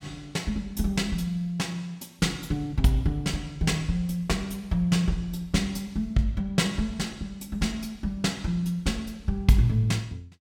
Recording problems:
none

